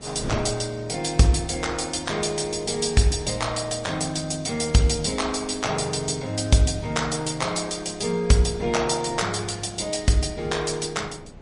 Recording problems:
codec artefacts; MP3, log-spectral distance 6 dB, nothing above 10.4 kHz
wind noise; below 380 Hz, SNR 19 dB

